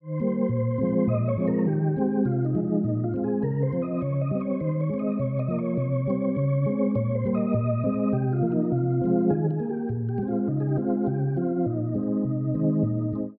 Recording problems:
treble missing; nothing above 5.5 kHz

